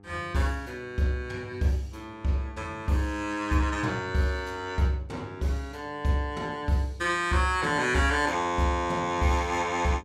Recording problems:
mains hum; 50 Hz, harmonics up to 1.3 kHz, SNR 26 dB

